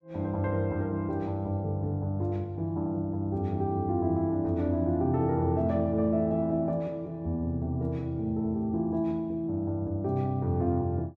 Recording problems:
none

